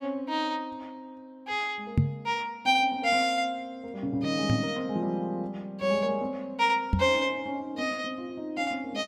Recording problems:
microphone bump; at 2 s, at 4.5 s and at 7 s; peak +8 dB vs average level

